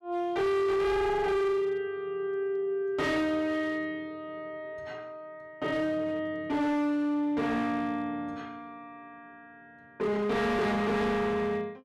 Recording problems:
distortion; hard clipping, signal-to-distortion ratio 8 dB

